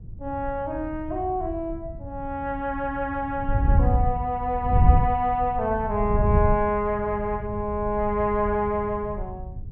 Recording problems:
wind noise; below 100 Hz, SNR 2 dB

